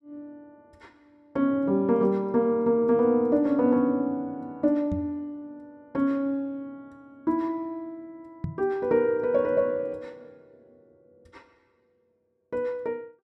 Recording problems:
microphone thump; at 5 s and at 8.5 s; peak -2 dB vs average level

